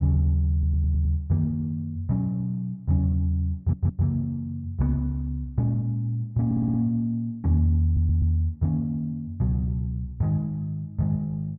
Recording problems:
audio stuttering; 4 times, first at 0.5 s

